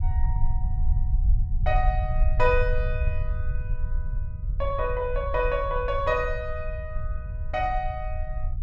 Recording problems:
rumble; below 64 Hz, strongest tone 22 Hz, SNR 1 dB

